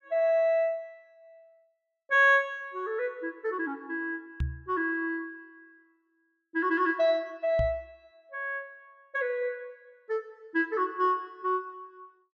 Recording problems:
microphone thump; at 4.5 s and at 7.5 s; peak +1 dB vs average level

